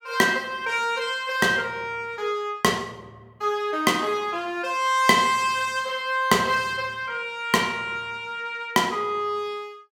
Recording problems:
none

